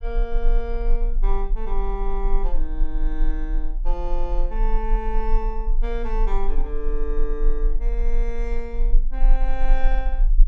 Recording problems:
low-frequency rumble; below 32 Hz, strongest tone 24 Hz, SNR -6 dB

